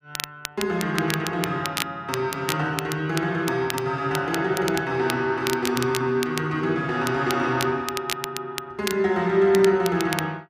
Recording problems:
crackle; vinyl, SNR 9 dB

